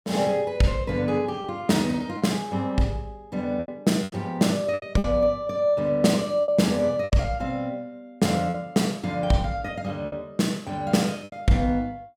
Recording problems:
lost packets; 6% of the sound replaced, filled with repeated pitch periods

